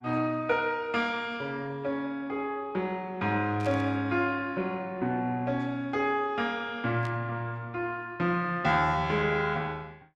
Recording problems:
lossy codec; Opus, log-spectral distance 2 dB
static burst; at 3.5 s and at 7 s; peak -11 dB vs average level

